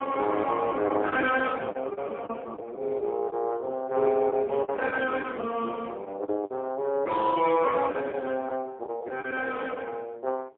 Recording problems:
phone line; 280 Hz to 3.3 kHz, AMR-NB, then MP3
lost packets; 8% of the sound replaced, filled with the last packet

